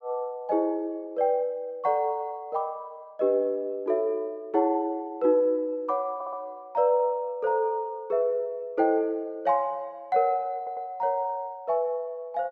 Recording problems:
stutter; at 6 s and at 11 s

